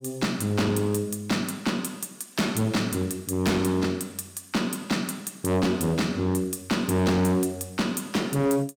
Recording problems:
distorted audio; hard clipping, signal-to-distortion ratio 7 dB

